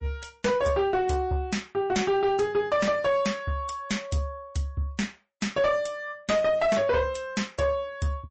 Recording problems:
lossy compression; MP3, log-spectral distance 2 dB, nothing above 8 kHz
distortion; soft clipping, signal-to-distortion ratio 10 dB

